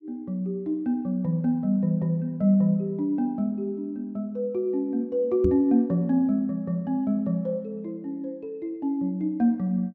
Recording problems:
microphone thump; at 5.5 s; peak +3 dB vs average level

